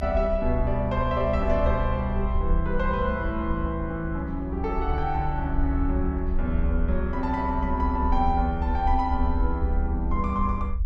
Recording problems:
low-frequency rumble; below 68 Hz, SNR 2 dB

